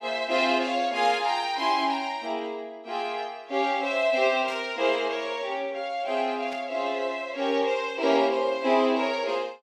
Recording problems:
burst of static; at 1 s, at 4.5 s and at 6.5 s; peak -13 dB vs average level

